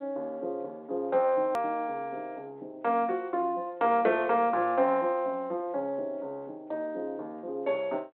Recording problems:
telephone audio; 300 Hz to 3.4 kHz, G.726
click at an edit; at 1.5 s

